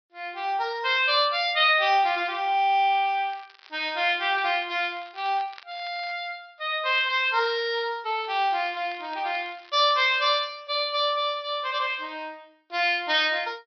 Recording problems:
low-pass filter; nothing above 5.5 kHz
crackling; from 3.5 to 6 s and from 8 to 10 s; loose cable, SNR 26 dB

